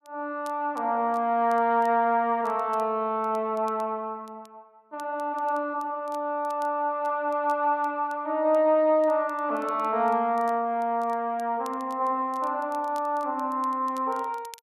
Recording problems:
crackling; vinyl, SNR 30 dB

